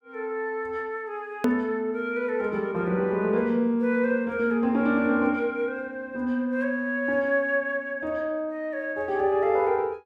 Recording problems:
hard cut with a click; at 1.5 s

